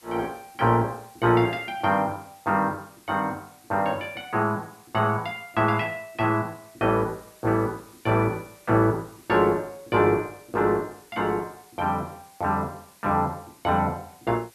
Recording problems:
background hiss; slope 0 dB per octave, SNR 27 dB

